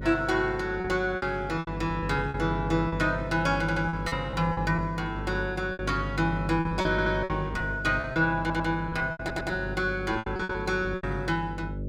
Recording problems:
hum; 50 Hz, harmonics up to 600 Hz, SNR 8 dB
lost packets; 11% of the sound replaced, filled with repeated pitch periods
audio stuttering; 4 times, first at 3.5 s

